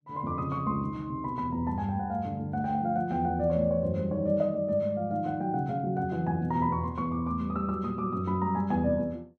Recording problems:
none

